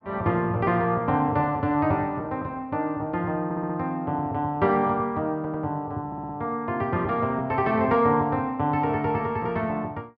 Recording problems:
stutter; at 3.5 s, at 5.5 s and at 6 s

